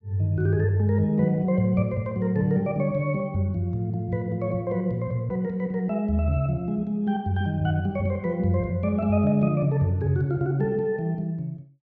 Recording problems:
none

